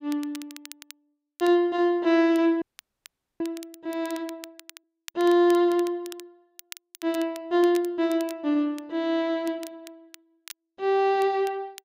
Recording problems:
crackle; vinyl, SNR 22 dB
audio freezing; at 2.5 s for 1 s

